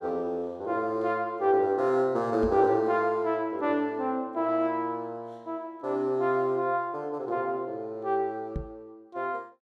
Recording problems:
microphone thump; at 2.5 s and at 8.5 s; peak -2 dB vs average level

